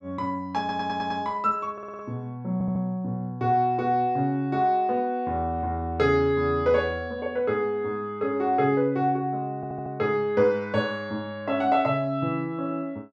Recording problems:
audio stuttering; 4 times, first at 0.5 s

